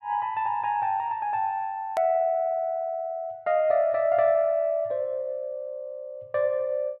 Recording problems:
hard cut with a click; at 2 s

